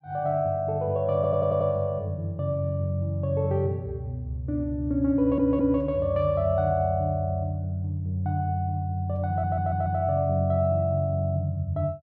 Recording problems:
audio stuttering; at 1 s, at 5 s and at 9.5 s

